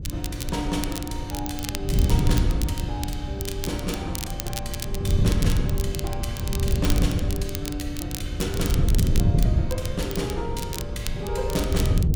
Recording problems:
wind on the microphone; below 130 Hz, SNR -4 dB
crackle; vinyl, SNR 5 dB

